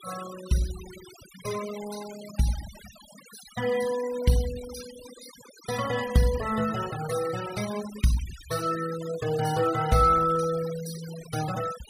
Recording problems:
noise reduction artefacts; signal-to-artefact ratio 14 dB

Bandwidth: 15 kHz